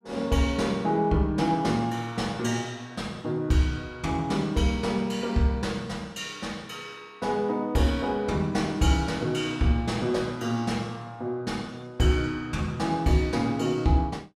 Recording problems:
none

